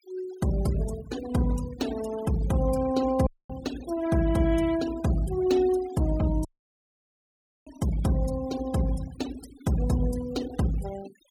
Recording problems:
denoising artefacts; signal-to-artefact ratio 16 dB
dropout; at 3.5 s and at 6.5 s for 1 s

